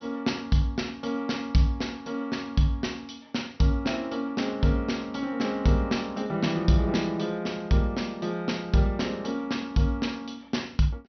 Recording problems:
low-pass filter; nothing above 6 kHz

